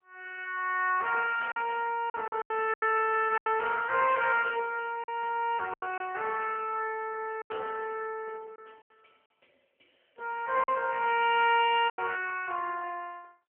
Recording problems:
phone line; 300 Hz to 3.1 kHz, AMR-NB
packet loss; 6% of the sound replaced, filled with silence

